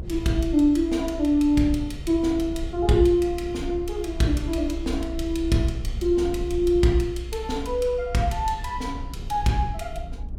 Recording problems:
low-frequency rumble; below 66 Hz, SNR 11 dB

